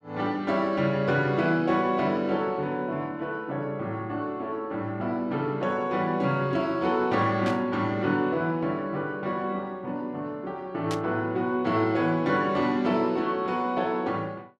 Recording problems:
static burst; at 7.5 s and at 11 s; peak -5 dB vs average level

